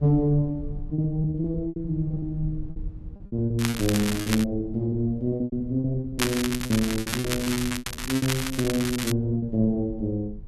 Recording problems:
rumble; below 96 Hz, SNR 14 dB
packet loss; 15% of the sound replaced, filled with repeated pitch periods
crackle; at 3.5 s and from 6 to 9 s; loose cable, SNR 4 dB

